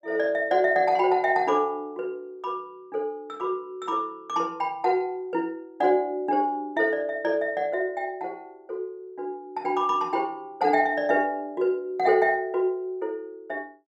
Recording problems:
none

